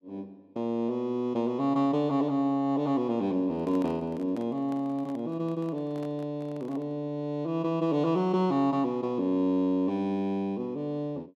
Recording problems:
handling noise; from 3.5 to 7 s; peak -11 dB vs average level

